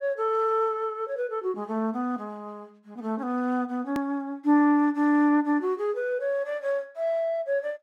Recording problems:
click at an edit; at 4 s

